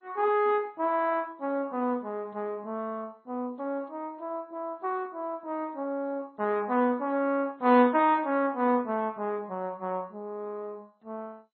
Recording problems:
lossy codec; MP3, then MP2, log-spectral distance 2 dB, nothing above 3.5 kHz

